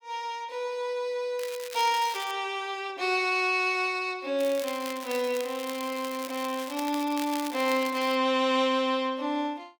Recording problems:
crackling; at 1.5 s and from 4.5 to 8 s; loose cable, SNR 13 dB

